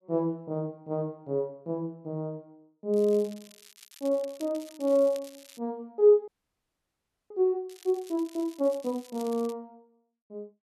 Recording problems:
crackling; from 3 to 5.5 s and from 7.5 to 9.5 s; loose cable, SNR 22 dB
frozen audio; at 6.5 s for 1 s

